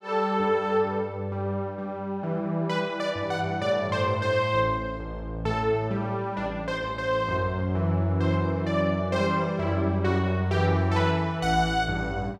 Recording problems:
none

